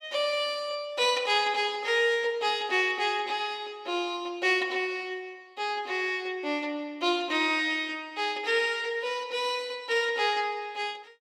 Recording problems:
none

